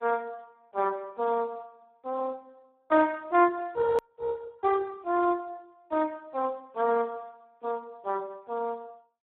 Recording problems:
telephone audio; 260 Hz to 2.8 kHz, Speex
click at an edit; at 4 s

